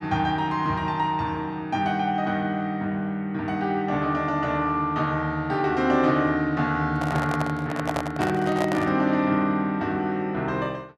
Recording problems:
handling noise; from 7 to 9 s; peak 0 dB vs average level

